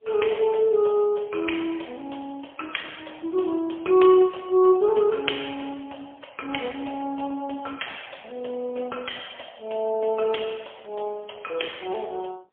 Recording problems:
telephone audio; 300 Hz to 3.3 kHz, AMR-NB, then MP3

